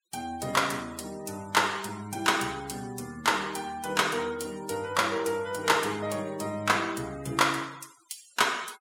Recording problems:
noise reduction artefacts; signal-to-artefact ratio 20 dB

